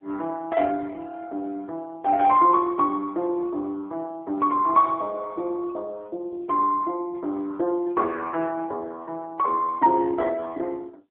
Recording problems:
phone line; 300 Hz to 3.4 kHz, AMR-NB

